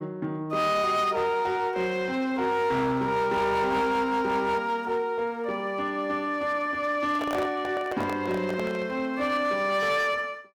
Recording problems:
distorted audio; hard clipping, uneven, signal-to-distortion ratio 12 dB
handling noise; from 7 to 9 s; peak -1 dB vs average level

